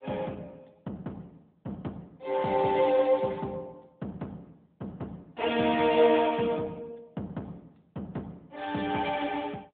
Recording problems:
telephone audio; 110 Hz to 3.5 kHz, AMR-NB

